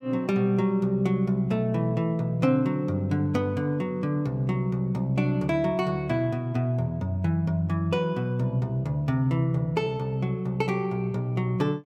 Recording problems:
none

